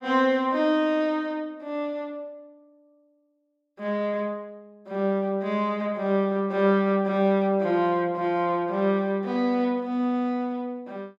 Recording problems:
none

